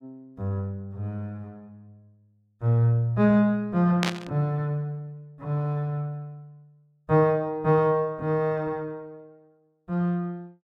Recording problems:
burst of static; at 4 s; peak +3 dB vs average level

